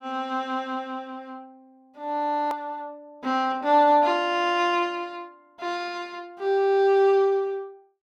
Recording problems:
hard cut with a click; at 2.5 s

